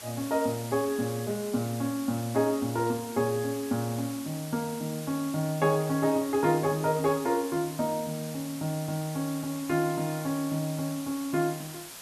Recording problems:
background hiss; slope 0 dB per octave, SNR 13 dB

